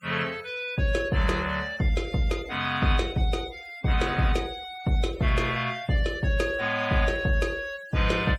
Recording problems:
denoising artefacts; signal-to-artefact ratio 20 dB

